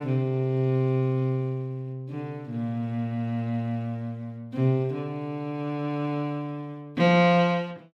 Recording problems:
none

